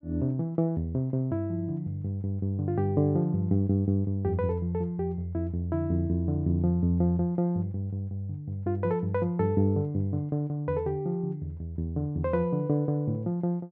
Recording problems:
treble missing; nothing above 8 kHz

